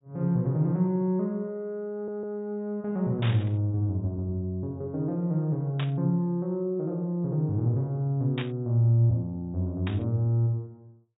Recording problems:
treble missing; nothing above 4 kHz
audio stuttering; at 2 s
burst of static; 4 times, first at 3 s; peak -5 dB vs average level

